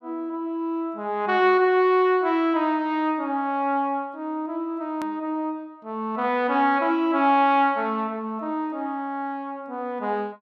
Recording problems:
hard cut with a click; at 5 s

